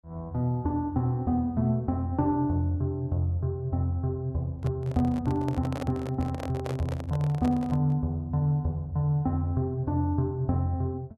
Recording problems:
microphone handling noise; from 4.5 to 8 s; peak -4 dB vs average level

